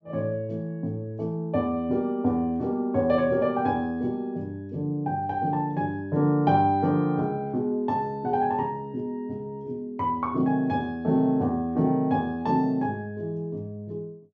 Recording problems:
treble missing; nothing above 8 kHz

